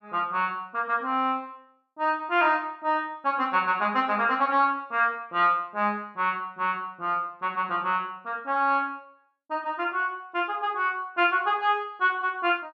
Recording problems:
none

